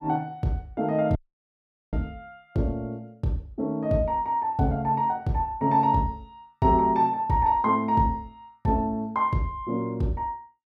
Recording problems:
audio cutting out; at 1 s for 1 s

